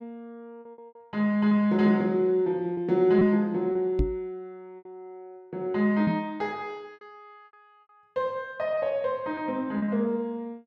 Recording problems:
lost packets; 7% of the sound replaced, filled with repeated pitch periods
microphone thump; at 4 s and at 6 s; peak +3 dB vs average level

